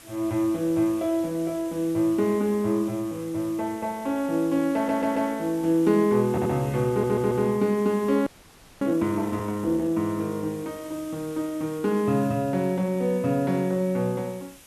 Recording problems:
hiss; slope -1 dB per octave, SNR 21 dB
stutter; at 5 s, at 6.5 s and at 7 s
audio freezing; at 8.5 s for 0.5 s

